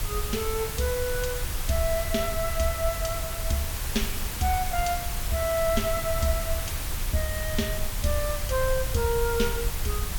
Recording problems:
background hiss; slope -1 dB per octave, SNR 4 dB
low-frequency rumble; below 72 Hz, SNR 5 dB

